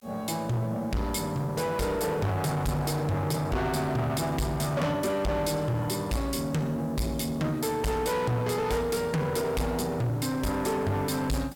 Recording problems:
distortion; soft clipping, signal-to-distortion ratio 6 dB
background hiss; slope 0 dB per octave, SNR 27 dB

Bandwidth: 17 kHz